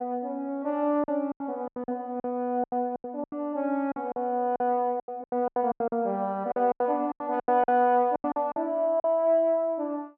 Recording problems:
lost packets; 15% of the sound replaced, filled with silence

